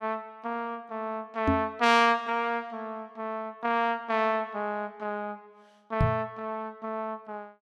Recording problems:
knock on the microphone; at 1.5 s and at 6 s; peak +7 dB vs average level

